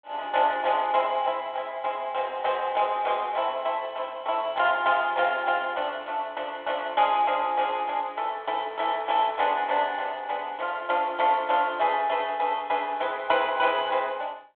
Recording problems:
telephone audio; 320 Hz to 3.6 kHz, G.726

